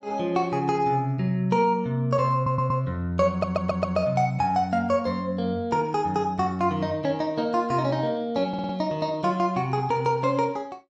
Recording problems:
stutter; at 2.5 s, at 3.5 s and at 8.5 s

